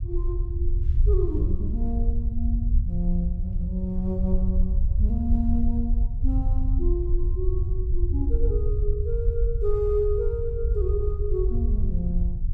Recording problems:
rumble; below 68 Hz, SNR -4 dB

